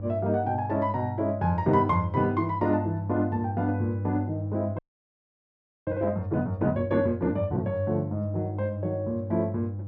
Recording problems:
electrical hum; 50 Hz, harmonics up to 500 Hz, SNR 7 dB
audio freezing; at 5 s for 1 s

